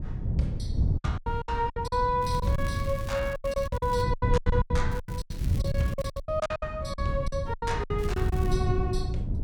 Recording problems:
wind on the microphone; below 120 Hz, SNR 0 dB
lost packets; 18% of the sound replaced, filled with silence
crackle; from 2 to 4 s, from 5 to 6 s and at 8 s; loose cable, SNR 19 dB

